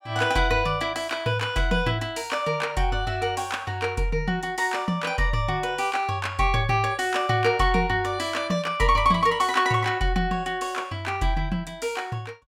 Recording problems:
none

